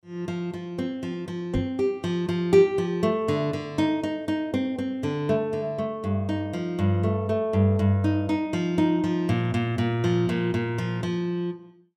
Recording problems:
knock on the microphone; at 1.5 s; peak +1 dB vs average level

